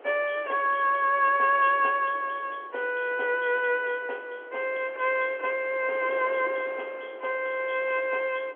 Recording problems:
telephone audio; 320 Hz to 3.3 kHz, G.711
wind on the microphone; below 980 Hz, SNR 20 dB

